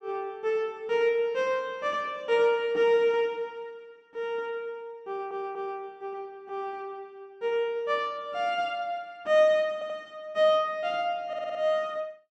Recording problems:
stutter; at 5 s, at 9.5 s and at 11 s

